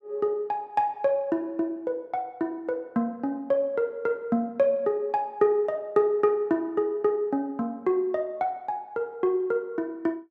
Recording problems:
none

